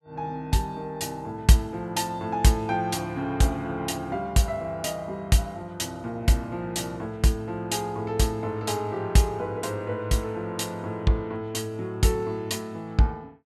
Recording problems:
none

